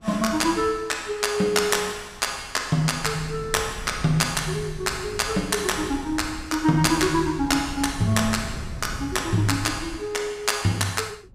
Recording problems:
wind on the microphone; below 160 Hz, SNR 15 dB

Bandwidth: 15.5 kHz